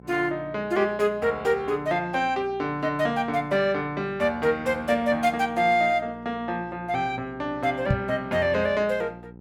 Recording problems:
hum; 60 Hz, harmonics up to 960 Hz, SNR 21 dB
microphone bump; at 8 s; peak +5 dB vs average level

